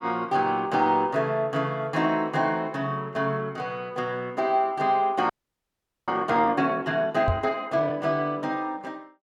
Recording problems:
audio freezing; at 5.5 s for 1 s
microphone thump; at 7.5 s; peak +2 dB vs average level

